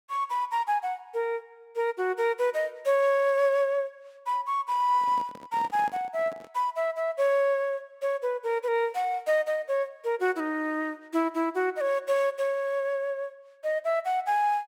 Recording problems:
handling noise; from 5 to 6.5 s; peak -12 dB vs average level

